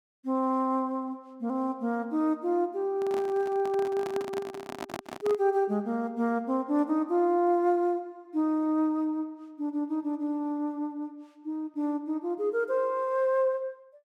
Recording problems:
handling noise; from 3 to 5.5 s; peak -4 dB vs average level

